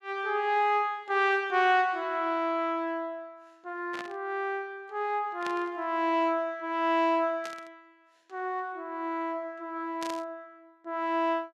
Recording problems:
static burst; 4 times, first at 4 s; peak -6 dB vs average level

